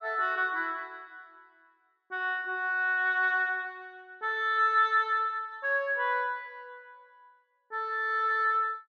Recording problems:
none

